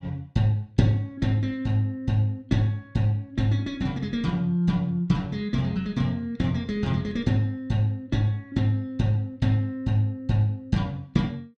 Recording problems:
none

